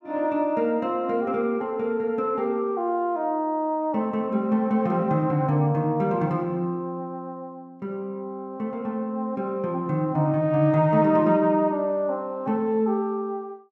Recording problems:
none

